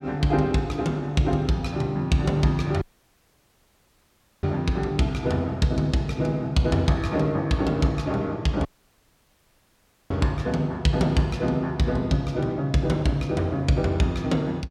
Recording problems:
dropout; at 3 s for 1.5 s and at 8.5 s for 1.5 s

